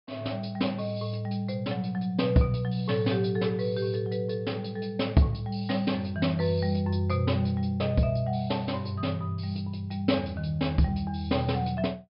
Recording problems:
low-pass filter; nothing above 5.5 kHz

